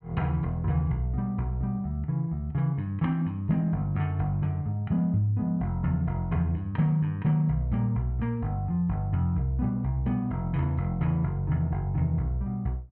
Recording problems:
none

